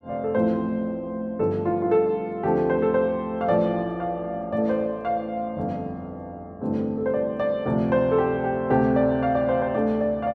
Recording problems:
none

